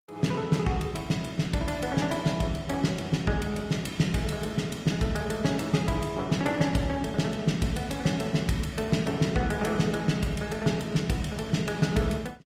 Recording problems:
lossy codec; Opus, log-spectral distance 4 dB

